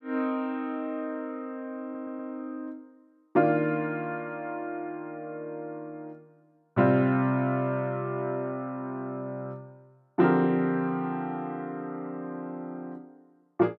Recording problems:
audio stuttering; at 2 s

